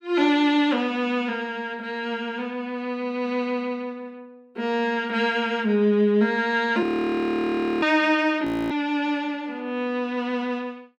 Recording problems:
audio freezing; at 7 s for 1 s and at 8.5 s

